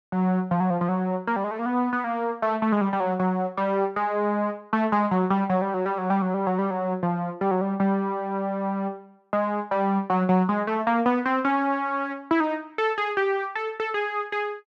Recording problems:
none

